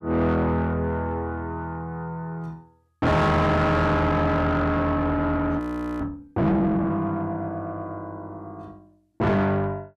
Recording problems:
distortion; soft clipping, signal-to-distortion ratio 6 dB
frozen audio; at 5.5 s

